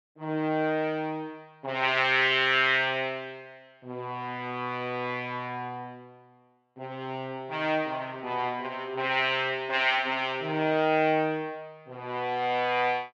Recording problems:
none

